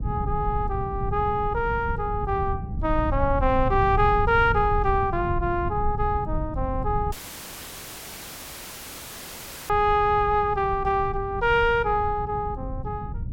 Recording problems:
low-frequency rumble; below 120 Hz, SNR 7 dB
dropout; at 7 s for 2.5 s; filled with static

